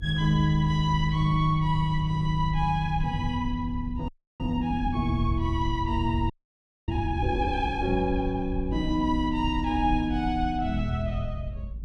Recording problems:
rumble; below 78 Hz, SNR 8 dB
audio freezing; at 4 s and at 6.5 s for 0.5 s

